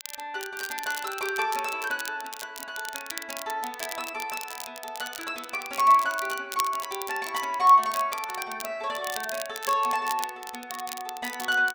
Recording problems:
crackle; vinyl, SNR 11 dB

